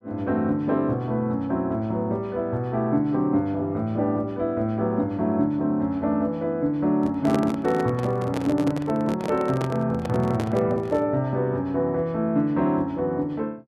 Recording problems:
microphone handling noise; from 7 to 11 s; peak 0 dB vs average level

